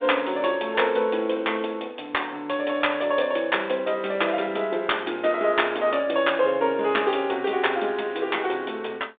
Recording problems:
phone line; 240 Hz to 3.7 kHz, G.726

